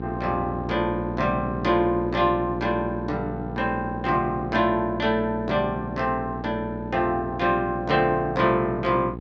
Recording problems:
hum; 60 Hz, harmonics up to 900 Hz, SNR 9 dB

